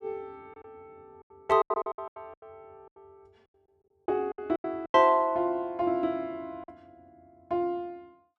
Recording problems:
lost packets; 14% of the sound replaced, filled with silence

